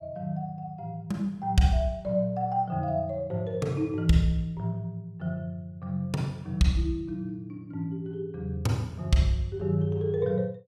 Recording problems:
none

